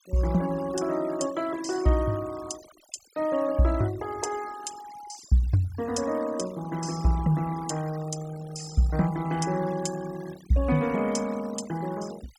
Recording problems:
denoising artefacts; signal-to-artefact ratio 18 dB

